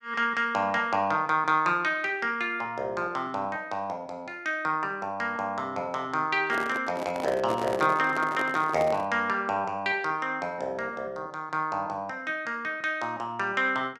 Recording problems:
microphone handling noise; from 6.5 to 9 s; peak -2 dB vs average level

